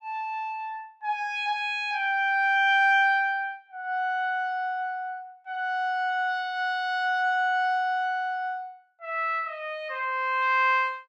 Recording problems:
none

